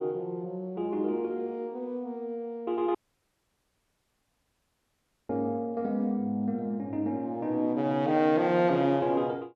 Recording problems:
dropout; at 3 s for 2.5 s

